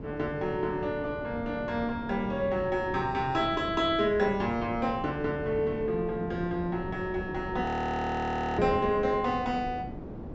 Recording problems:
treble missing; nothing above 8 kHz
wind on the microphone; below 420 Hz, SNR 10 dB
audio freezing; at 7.5 s for 1 s

